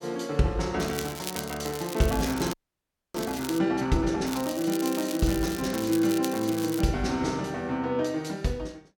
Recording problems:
crackle; from 1 to 3.5 s and from 4.5 to 7 s; loose cable, SNR 11 dB
audio freezing; at 2.5 s for 0.5 s

